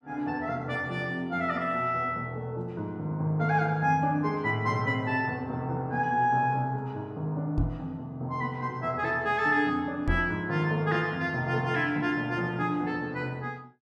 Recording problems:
microphone bump; at 7.5 s and at 10 s; peak +4 dB vs average level

